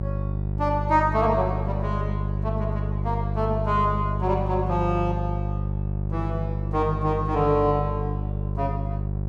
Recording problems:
electrical hum; 50 Hz, harmonics up to 600 Hz, SNR 2 dB

